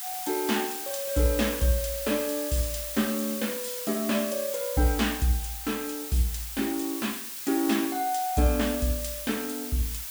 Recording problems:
background hiss; slope +3 dB per octave, SNR 5 dB

